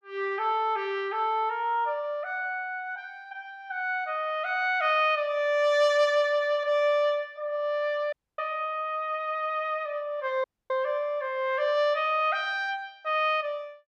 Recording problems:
audio cutting out; at 8 s and at 10 s

